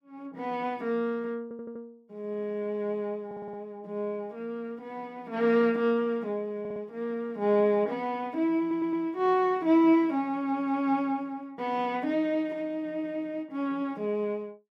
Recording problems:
stutter; 4 times, first at 1.5 s

